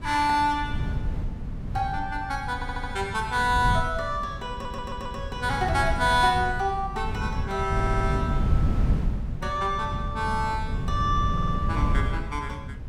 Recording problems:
wind on the microphone; below 140 Hz, SNR 3 dB
stutter; 4 times, first at 2.5 s

